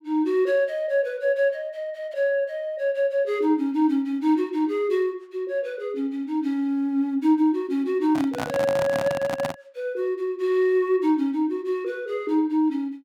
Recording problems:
microphone handling noise; from 8 to 9.5 s; peak -1 dB vs average level

